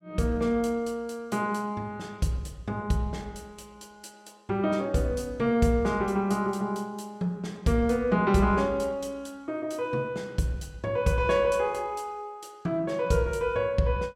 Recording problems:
none

